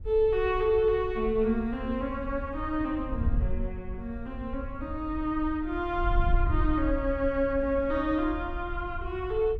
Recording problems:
wind noise; below 72 Hz, SNR 7 dB

